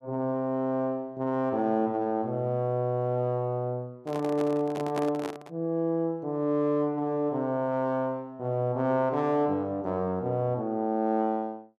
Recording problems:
microphone handling noise; from 4 to 5.5 s; peak -2 dB vs average level

